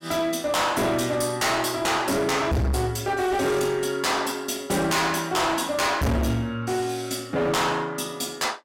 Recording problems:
distorted audio; hard clipping, uneven, signal-to-distortion ratio 6 dB

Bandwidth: 16 kHz